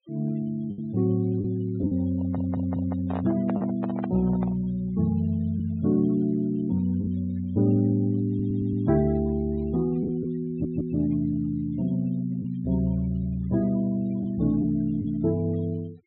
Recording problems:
low-pass filter; nothing above 4 kHz
denoising artefacts; signal-to-artefact ratio 25 dB
lost packets; 2% of the sound replaced, filled with the last packet
handling noise; from 2 to 4.5 s; peak -4 dB vs average level
stutter; at 2 s, at 8.5 s and at 10 s

